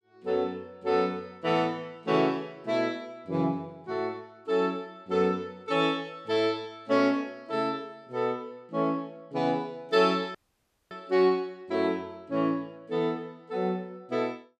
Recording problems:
dropout; at 10 s for 0.5 s

